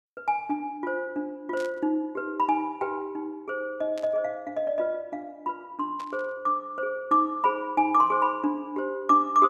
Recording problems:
burst of static; at 1.5 s, at 4 s and at 6 s; peak -12 dB vs average level

